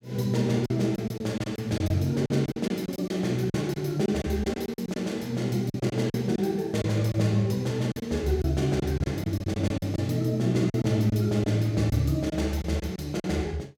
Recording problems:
lost packets; 10% of the sound replaced, filled with silence

